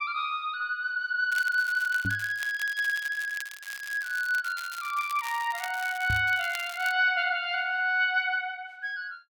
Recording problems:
crackle; from 1.5 to 7 s; loose cable, SNR 15 dB
knock on the microphone; at 2 s and at 6 s; peak -2 dB vs average level

